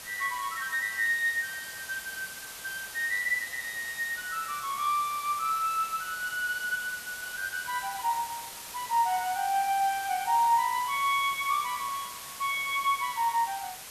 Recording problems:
background hiss; slope 0 dB per octave, SNR 11 dB

